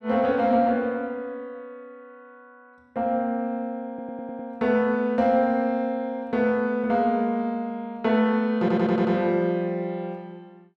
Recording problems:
audio stuttering; at 4 s and at 8.5 s

